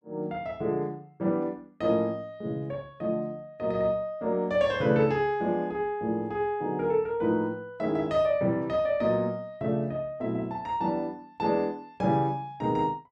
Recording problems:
none

